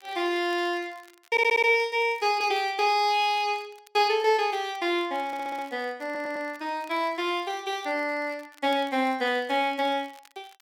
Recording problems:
crackle; vinyl, SNR 29 dB
stutter; at 1.5 s, at 5.5 s and at 6 s

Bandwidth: 16.5 kHz